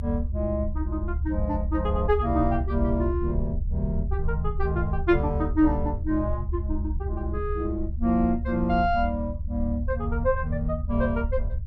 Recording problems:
low-frequency rumble; below 72 Hz, SNR 3 dB

